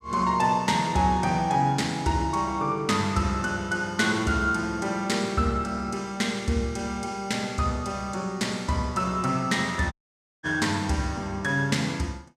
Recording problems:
audio cutting out; at 10 s for 0.5 s

